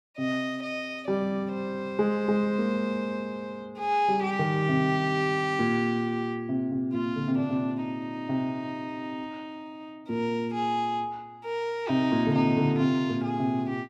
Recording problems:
none

